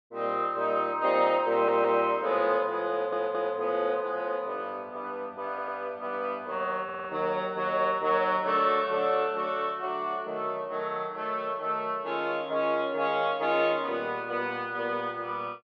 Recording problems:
audio stuttering; 4 times, first at 1.5 s

